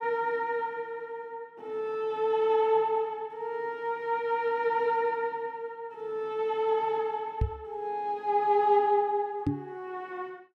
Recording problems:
microphone thump; at 7.5 s and at 9.5 s; peak +5 dB vs average level

